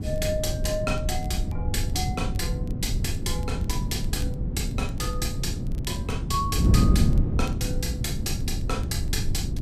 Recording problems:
low-frequency rumble; below 76 Hz, SNR 6 dB
wind on the microphone; below 180 Hz, SNR -3 dB
crackling; vinyl, SNR 25 dB

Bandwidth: 15 kHz